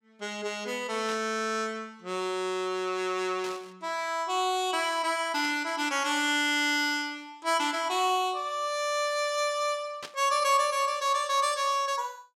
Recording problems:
burst of static; 4 times, first at 1 s; peak -7 dB vs average level

